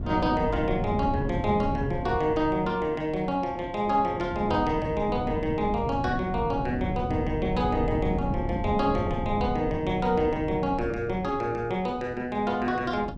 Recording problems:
wind on the microphone; below 240 Hz, SNR 6 dB

